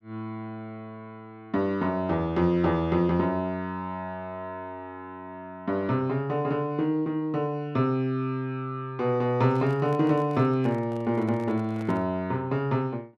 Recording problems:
handling noise; from 9.5 to 12 s; peak -13 dB vs average level

